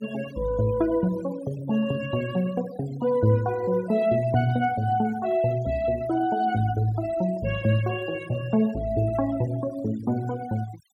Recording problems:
denoising artefacts; signal-to-artefact ratio 19 dB

